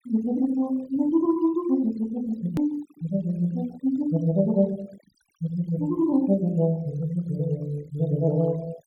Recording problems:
noise reduction artefacts; signal-to-artefact ratio 24 dB
click at an edit; at 2.5 s

